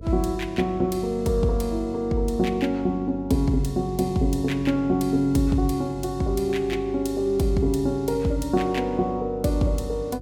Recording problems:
hum; 50 Hz, harmonics up to 550 Hz, SNR 16 dB

